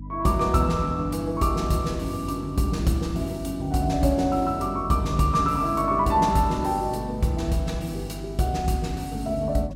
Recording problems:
electrical hum; 50 Hz, harmonics up to 300 Hz, SNR 13 dB

